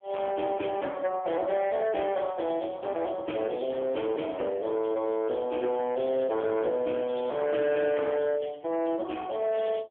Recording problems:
telephone audio; 220 Hz to 3.4 kHz, AMR-NB
distortion; hard clipping, signal-to-distortion ratio 11 dB

